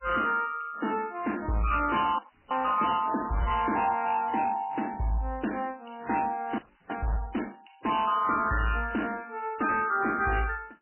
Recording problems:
lossy codec; MP3, log-spectral distance 7 dB, nothing above 3 kHz
distortion; hard clipping, uneven, signal-to-distortion ratio 11 dB
audio freezing; at 2 s and at 6.5 s

